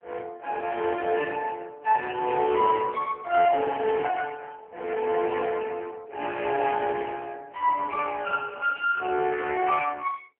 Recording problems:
telephone audio; 300 Hz to 2.8 kHz, AMR-NB

